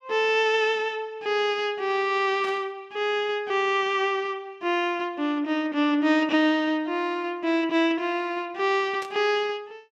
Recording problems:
static burst; at 2.5 s and at 9 s; peak -11 dB vs average level

